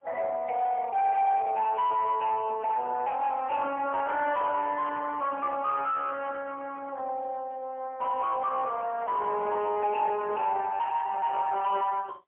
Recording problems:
telephone audio; 320 Hz to 3.3 kHz, AMR-NB, then MP3
distorted audio; soft clipping, signal-to-distortion ratio 7 dB

